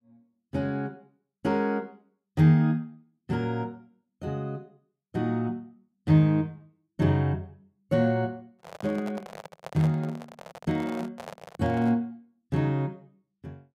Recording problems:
handling noise; from 8.5 to 12 s; peak -7 dB vs average level

